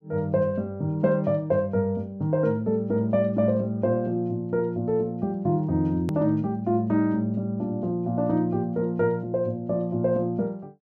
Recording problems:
hard cut with a click; at 6 s

